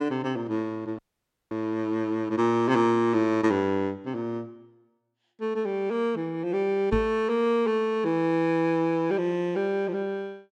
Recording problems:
dropout; at 1 s for 0.5 s
knock on the microphone; at 7 s; peak 0 dB vs average level

